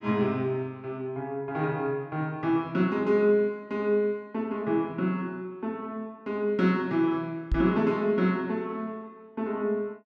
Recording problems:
microphone bump; at 7.5 s; peak +3 dB vs average level

